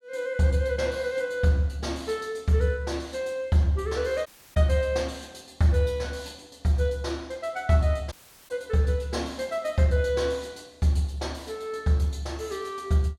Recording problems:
audio cutting out; at 4.5 s and at 8 s

